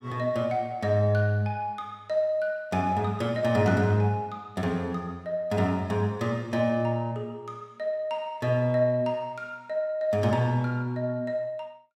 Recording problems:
none

